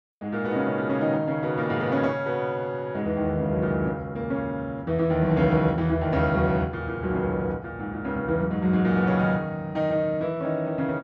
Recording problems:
none

